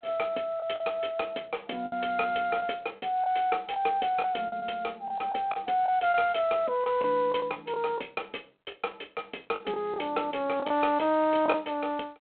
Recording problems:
telephone audio; 260 Hz to 3.5 kHz, G.726
packet loss; 7% of the sound replaced, filled with the last packet

